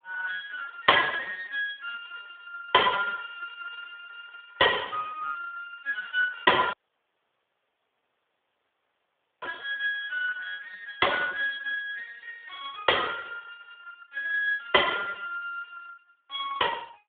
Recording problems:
phone line; 260 Hz to 3.6 kHz, Speex
audio cutting out; at 6.5 s for 2.5 s

